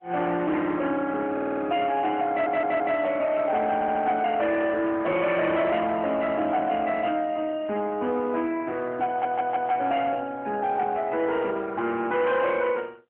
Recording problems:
phone line; 220 Hz to 3.3 kHz, AMR-NB
distorted audio; hard clipping, uneven, signal-to-distortion ratio 11 dB
stutter; 4 times, first at 1.5 s

